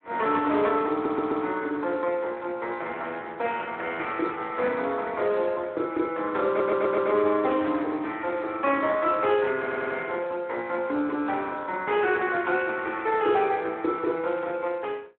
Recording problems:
telephone audio; 240 Hz to 3.3 kHz, Speex
stutter; at 1 s, at 6.5 s and at 9.5 s

